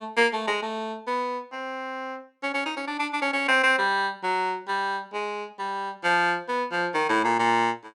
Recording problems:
none

